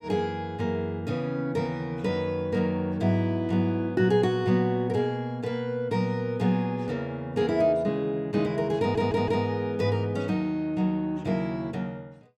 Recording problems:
stutter; at 9 s

